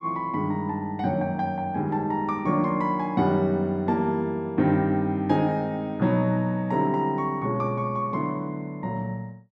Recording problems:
none

